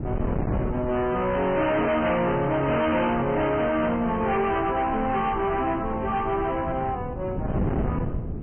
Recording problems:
low-pass filter; nothing above 3.1 kHz
codec artefacts; MP3, log-spectral distance 2 dB
distorted audio; hard clipping, signal-to-distortion ratio 7 dB
wind noise; below 310 Hz, SNR 8 dB

